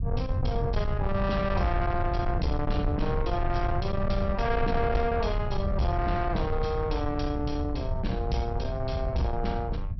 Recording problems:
treble cut off; nothing above 5.7 kHz
distortion; soft clipping, signal-to-distortion ratio 11 dB
rumble; below 110 Hz, SNR 2 dB

